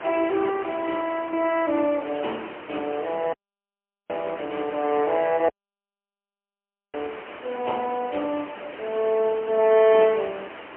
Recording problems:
phone line; 240 Hz to 3.1 kHz, AMR-NB, then MP3
hiss; SNR 14 dB
dropout; at 3.5 s for 1 s and at 5.5 s for 1.5 s

